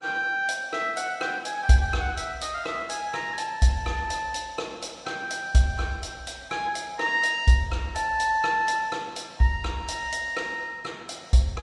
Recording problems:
lossy compression; Vorbis, log-spectral distance 3 dB, nothing above 10.4 kHz

